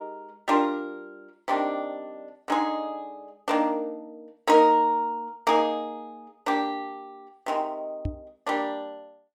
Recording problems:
knock on the microphone; at 8 s; peak -1 dB vs average level

